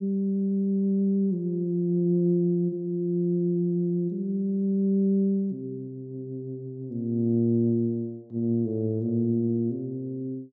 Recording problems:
none

